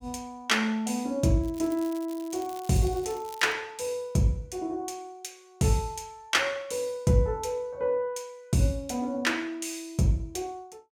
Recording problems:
crackling; from 1.5 to 3.5 s; loose cable, SNR 20 dB

